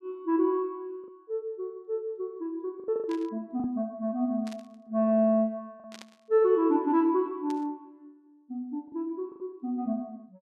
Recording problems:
lost packets; 5% of the sound replaced, filled with the last packet
burst of static; 4 times, first at 3 s; peak -12 dB vs average level

